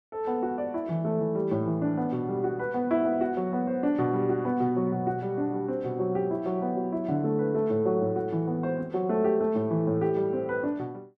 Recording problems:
none

